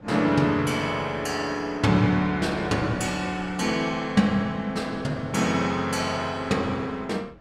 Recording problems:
wind on the microphone; below 540 Hz, SNR 23 dB

